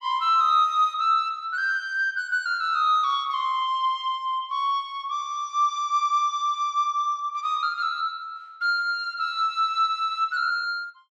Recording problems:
none

